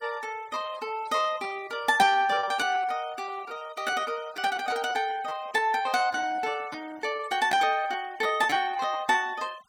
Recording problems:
denoising artefacts; signal-to-artefact ratio 23 dB
packet loss; 11% of the sound replaced, filled with repeated pitch periods

